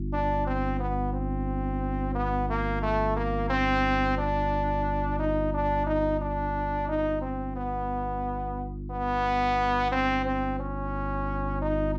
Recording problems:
hum; 50 Hz, harmonics up to 350 Hz, SNR 4 dB

